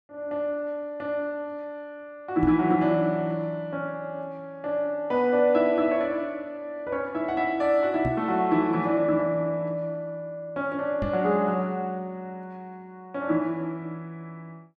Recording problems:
microphone thump; at 2.5 s, at 8 s and at 11 s; peak 0 dB vs average level

